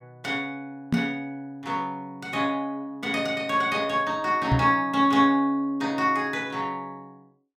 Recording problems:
microphone thump; at 1 s and at 4.5 s; peak +5 dB vs average level

